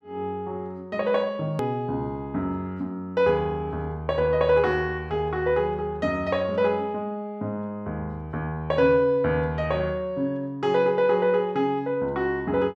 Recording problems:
click at an edit; at 1.5 s

